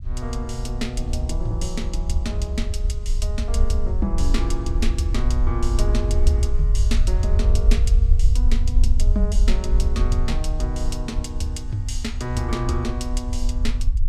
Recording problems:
rumble; below 58 Hz, SNR -5 dB

